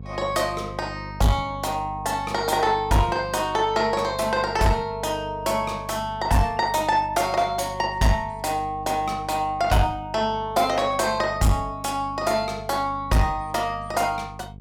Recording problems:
distortion; soft clipping, signal-to-distortion ratio 12 dB
hum; 50 Hz, harmonics up to 500 Hz, SNR 16 dB

